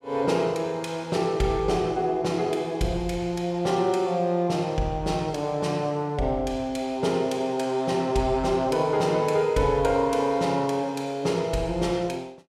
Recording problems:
none

